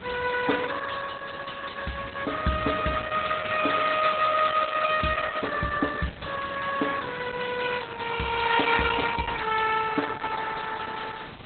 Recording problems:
codec artefacts; MP2, then Opus, log-spectral distance 8 dB, nothing above 4 kHz
background hiss; SNR 16 dB

